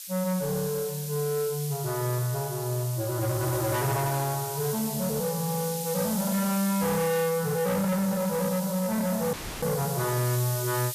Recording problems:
distortion; soft clipping, signal-to-distortion ratio 7 dB
hiss; SNR 7 dB
dropout; at 9.5 s

